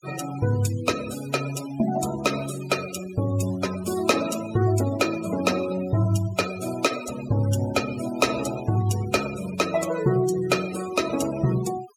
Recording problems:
noise reduction artefacts; signal-to-artefact ratio 12 dB

